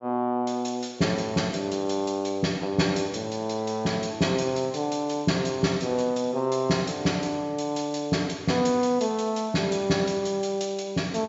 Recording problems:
low-pass filter; nothing above 8 kHz

